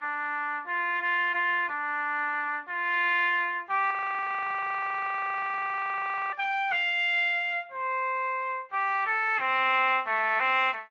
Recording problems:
codec artefacts; Speex, then AAC, log-spectral distance 3 dB
audio freezing; at 4 s for 2.5 s

